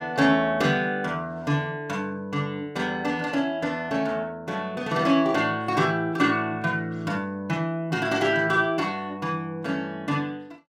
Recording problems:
none

